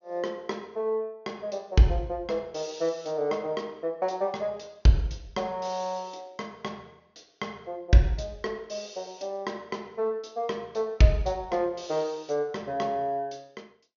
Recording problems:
treble missing; nothing above 6.6 kHz

